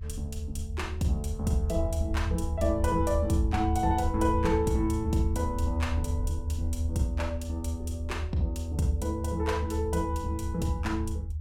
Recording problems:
rumble; below 80 Hz, strongest tone 78 Hz, SNR 2 dB

